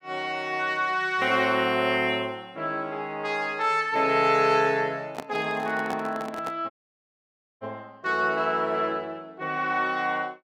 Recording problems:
handling noise; from 5 to 6.5 s; peak -5 dB vs average level
audio cutting out; at 6.5 s for 1 s

